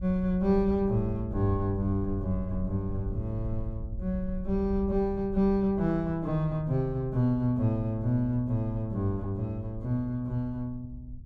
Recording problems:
wind on the microphone; below 84 Hz, SNR 11 dB

